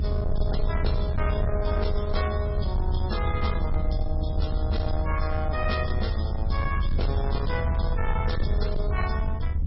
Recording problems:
codec artefacts; MP3, log-spectral distance 2 dB, nothing above 5.3 kHz
distorted audio; soft clipping, signal-to-distortion ratio 12 dB
rumble; below 78 Hz, SNR -3 dB

